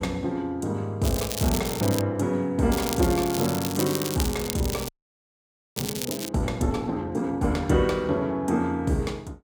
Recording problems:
crackling; at 1 s and from 2.5 to 6.5 s; loose cable, SNR 7 dB
frozen audio; at 5 s for 1 s

